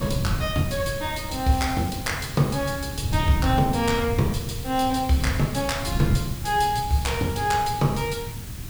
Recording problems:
background hiss; slope 0 dB per octave, SNR 14 dB
wind noise; below 150 Hz, SNR 6 dB

